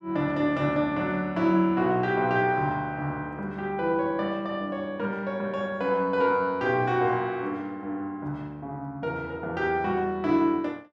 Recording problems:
none

